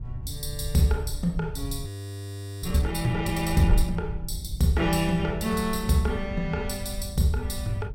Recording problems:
wind on the microphone; below 82 Hz, SNR 8 dB
frozen audio; at 2 s for 1 s

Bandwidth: 16 kHz